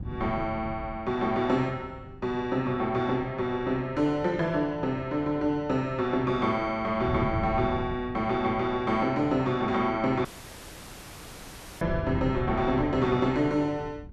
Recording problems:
wind noise; below 170 Hz, SNR 12 dB
dropout; at 10 s for 1.5 s

